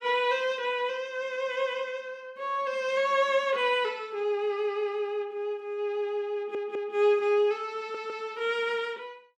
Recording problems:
audio stuttering; at 6.5 s and at 8 s

